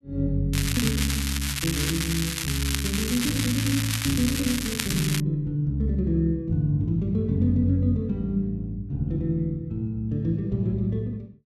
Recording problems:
crackle; from 0.5 to 5 s; loose cable, SNR 3 dB

